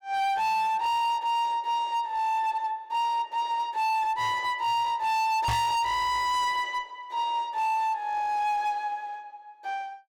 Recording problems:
distortion; hard clipping, signal-to-distortion ratio 7 dB
microphone thump; at 5.5 s; peak +5 dB vs average level

